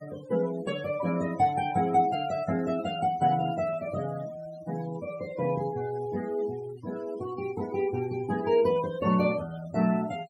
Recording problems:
noise reduction artefacts; signal-to-artefact ratio 17 dB

